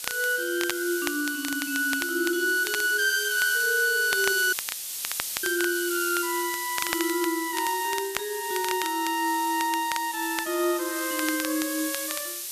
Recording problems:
background hiss; SNR 6 dB
crackling; vinyl, SNR 10 dB
audio cutting out; at 4.5 s for 1 s

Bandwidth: 14.5 kHz